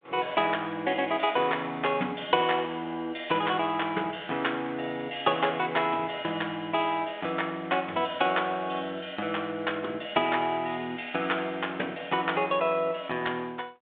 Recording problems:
phone line; 240 Hz to 3.6 kHz, G.726

